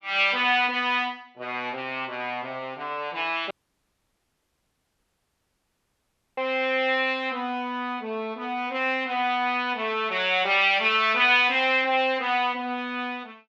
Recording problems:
audio cutting out; at 3.5 s for 3 s

